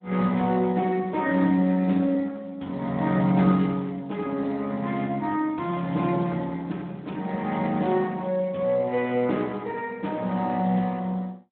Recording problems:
phone line; 130 Hz to 3.9 kHz, Speex

